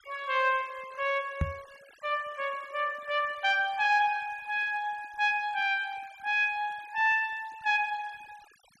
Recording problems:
denoising artefacts; signal-to-artefact ratio 24 dB
microphone bump; at 1.5 s; peak +3 dB vs average level

